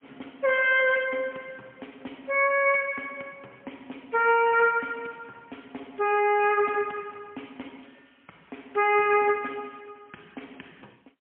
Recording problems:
phone line; 280 Hz to 3.1 kHz, AMR-NB, then MP3

